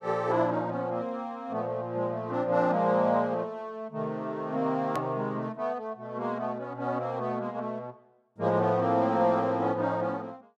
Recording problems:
edit click; at 5 s

